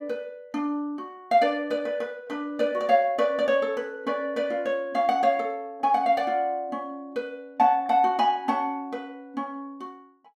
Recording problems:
none

